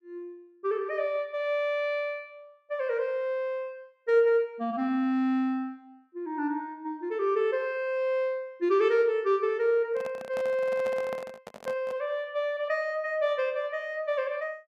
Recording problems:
handling noise; from 10 to 12 s; peak -6 dB vs average level

